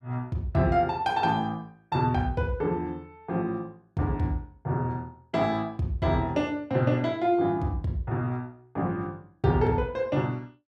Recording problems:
none

